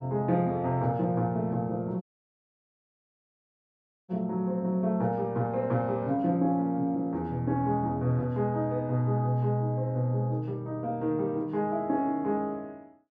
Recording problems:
audio cutting out; at 2 s for 2 s

